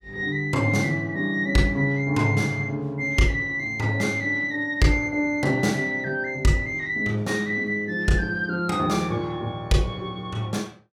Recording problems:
none

